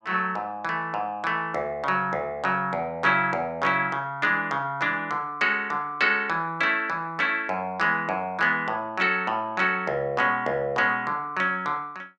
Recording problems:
none

